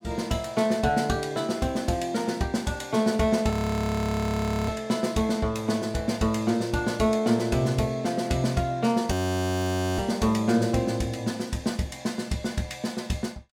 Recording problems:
frozen audio; at 3.5 s for 1 s and at 9 s for 1 s

